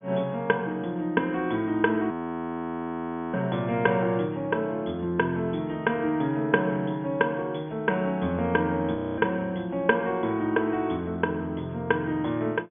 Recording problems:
treble cut off; nothing above 3.4 kHz
frozen audio; at 2 s for 1 s and at 9 s

